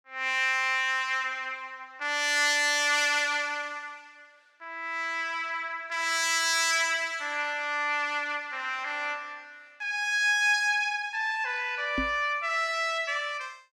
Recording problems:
knock on the microphone; at 12 s; peak -1 dB vs average level

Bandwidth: 16.5 kHz